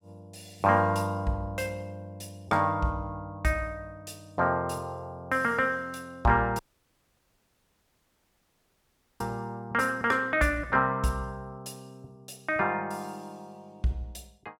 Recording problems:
dropout; at 6.5 s for 2.5 s

